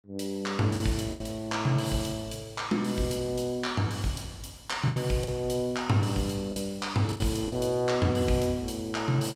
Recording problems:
lost packets; 4% of the sound replaced, filled with the last packet

